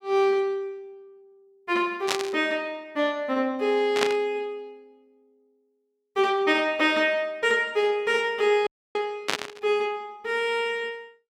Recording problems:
burst of static; at 2 s, at 4 s and at 9.5 s; peak +5 dB vs average level
audio cutting out; at 8.5 s

